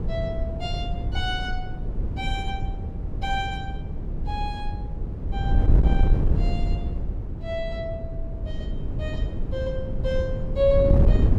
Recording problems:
wind on the microphone; below 100 Hz, SNR -3 dB

